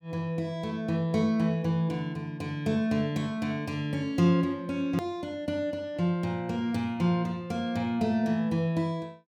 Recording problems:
click at an edit; at 5 s

